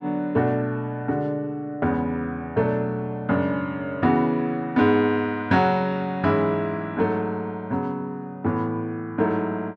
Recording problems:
none

